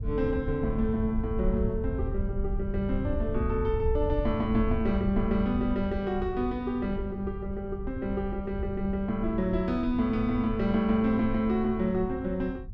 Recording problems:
rumble; below 86 Hz, SNR 7 dB

